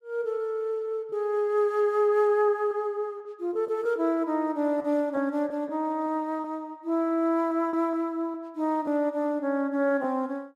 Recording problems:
lost packets; 3% of the sound replaced, filled with repeated pitch periods

